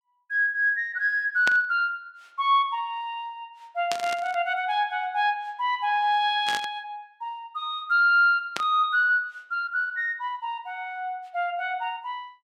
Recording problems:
static burst; 4 times, first at 1.5 s; peak -1 dB vs average level

